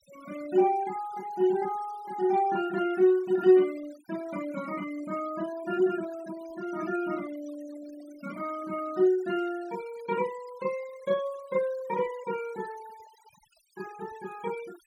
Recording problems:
denoising artefacts; signal-to-artefact ratio 20 dB

